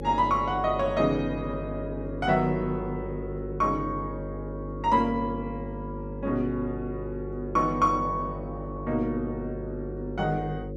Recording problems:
hum; 50 Hz, harmonics up to 550 Hz, SNR 7 dB

